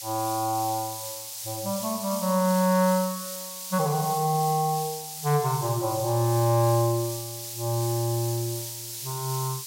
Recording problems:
hiss; SNR 8 dB

